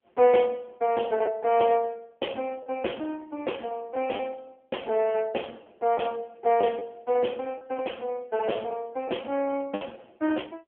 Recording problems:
telephone audio; 280 Hz to 3.3 kHz, AMR-NB
lost packets; 3% of the sound replaced, filled with the last packet

